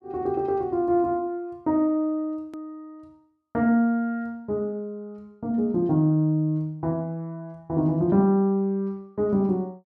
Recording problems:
click at an edit; at 2.5 s

